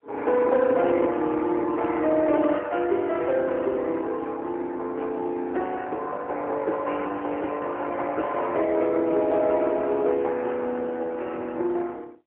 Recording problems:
phone line; 280 Hz to 3.2 kHz, AMR-NB, then MP3

